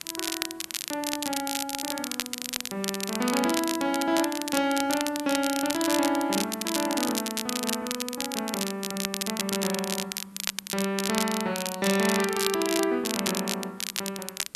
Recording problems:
background hiss; SNR 26 dB
crackle; vinyl, SNR 3 dB

